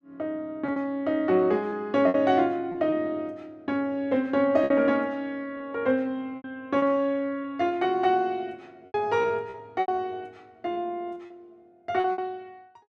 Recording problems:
packet loss; 7% of the sound replaced, filled with repeated pitch periods

